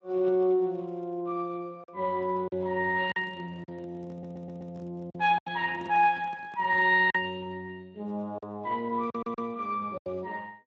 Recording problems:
lossy codec; Speex, log-spectral distance 2 dB
lost packets; 5% of the sound replaced, filled with silence
microphone handling noise; from 3 to 7 s; peak -12 dB vs average level
audio stuttering; at 4 s and at 9 s

